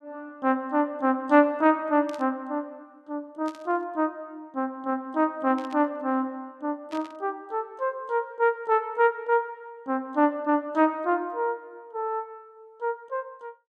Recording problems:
static burst; 4 times, first at 2 s; peak -14 dB vs average level

